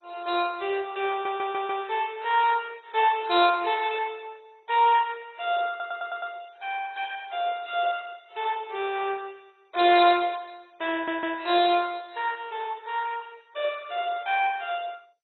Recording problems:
lossy compression; AAC, then MP2, log-spectral distance 4 dB, nothing above 3.6 kHz
audio stuttering; at 1 s, at 5.5 s and at 11 s

